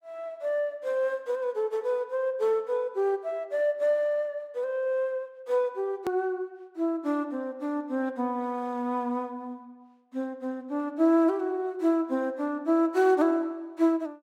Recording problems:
click at an edit; at 6 s

